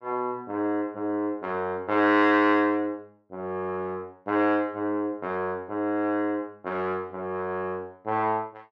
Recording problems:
none

